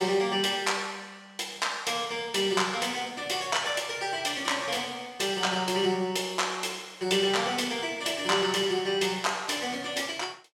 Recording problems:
none

